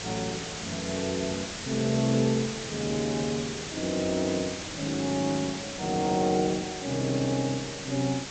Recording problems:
low-pass filter; nothing above 8 kHz
hiss; slope -1 dB per octave, SNR 6 dB

